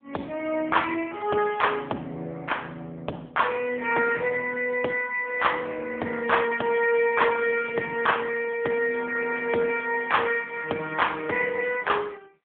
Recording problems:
telephone audio; 220 Hz to 3.5 kHz, AMR-NB

